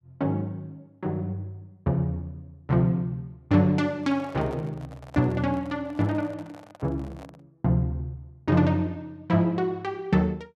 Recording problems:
microphone handling noise; from 4 to 7.5 s; peak -12 dB vs average level

